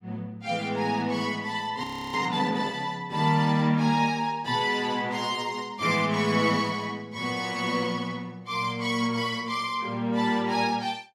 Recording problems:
audio freezing; at 2 s

